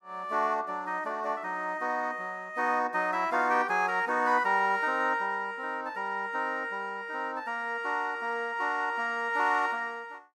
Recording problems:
none

